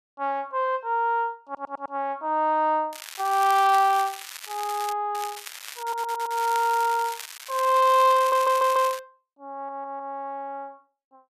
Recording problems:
audio stuttering; 4 times, first at 1.5 s
crackle; at 3 s, from 3.5 to 5 s and from 5 to 9 s; loose cable, SNR 14 dB

